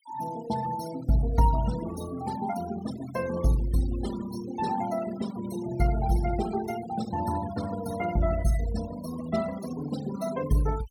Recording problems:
noise reduction artefacts; signal-to-artefact ratio 13 dB

